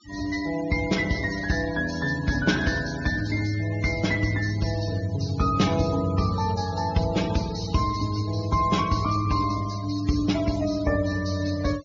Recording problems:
treble cut off; nothing above 7.2 kHz
denoising artefacts; signal-to-artefact ratio 14 dB

